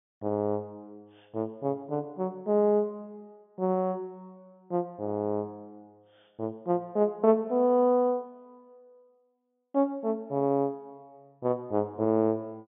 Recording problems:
treble missing; nothing above 3.6 kHz

